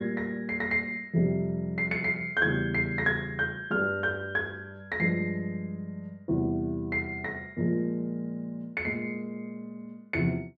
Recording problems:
none

